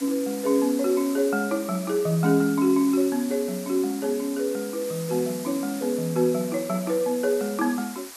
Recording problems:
hiss; slope 0 dB per octave, SNR 14 dB

